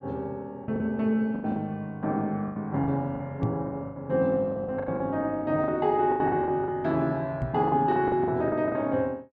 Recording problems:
lost packets; 13% of the sound replaced, filled with the last packet
microphone thump; at 3.5 s and at 7.5 s; peak +1 dB vs average level

